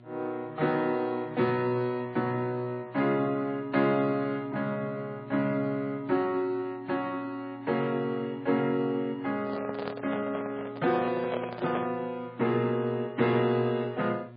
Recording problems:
lossy compression; MP3, log-spectral distance 2 dB, nothing above 4.1 kHz
electrical hum; 60 Hz, harmonics up to 1.3 kHz, SNR 20 dB
microphone handling noise; from 9.5 to 12 s; peak 0 dB vs average level

